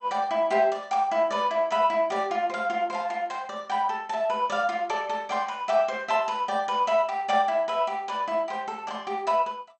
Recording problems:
codec artefacts; MP2, log-spectral distance 2 dB, nothing above 8 kHz

